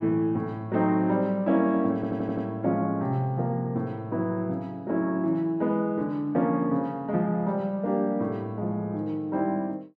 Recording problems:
audio stuttering; at 2 s

